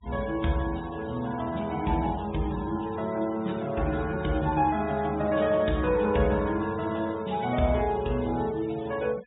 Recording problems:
treble cut off; nothing above 4 kHz
denoising artefacts; signal-to-artefact ratio 19 dB

